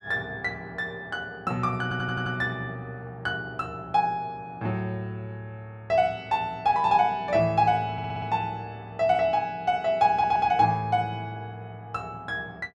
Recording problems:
stutter; at 2 s, at 8 s and at 10 s

